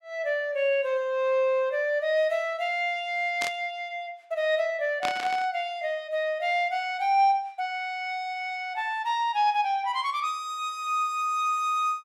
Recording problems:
burst of static; at 3.5 s and at 5 s; peak -1 dB vs average level

